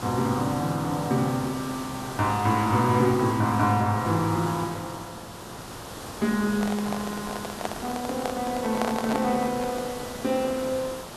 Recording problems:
background hiss; SNR 11 dB
microphone handling noise; from 6.5 to 10 s; peak +1 dB vs average level

